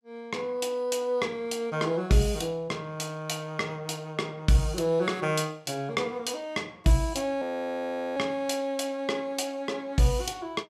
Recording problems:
audio freezing; at 7.5 s for 0.5 s

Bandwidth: 14.5 kHz